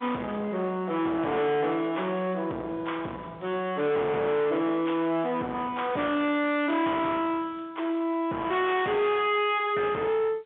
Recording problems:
telephone audio; 170 Hz to 3.6 kHz, G.711
distorted audio; soft clipping, signal-to-distortion ratio 8 dB

